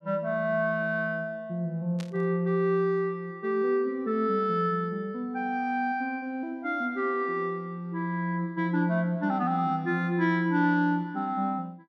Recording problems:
static burst; at 2 s; peak -11 dB vs average level

